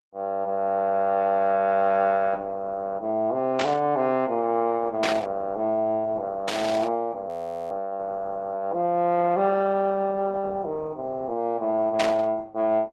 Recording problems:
codec artefacts; Opus, log-spectral distance 2 dB
static burst; 4 times, first at 3.5 s; peak +2 dB vs average level
frozen audio; at 7.5 s

